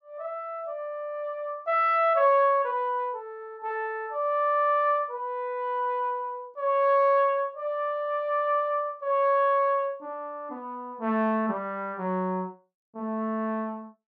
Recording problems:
none

